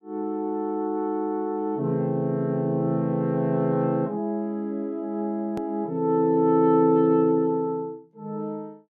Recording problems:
hard cut with a click; at 5.5 s

